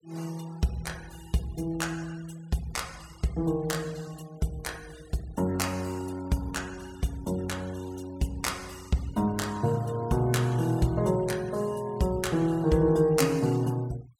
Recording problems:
noise reduction artefacts; signal-to-artefact ratio 22 dB

